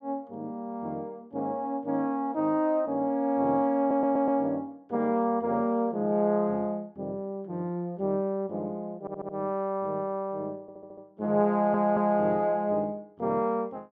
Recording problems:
audio stuttering; 4 times, first at 4 s

